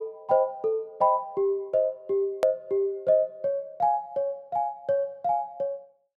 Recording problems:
click at an edit; at 2.5 s

